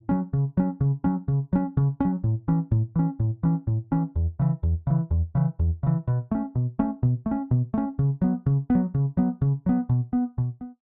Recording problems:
none

